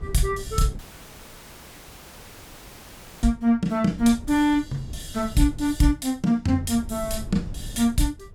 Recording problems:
wind on the microphone; below 120 Hz, SNR 15 dB
audio cutting out; at 1 s for 2.5 s

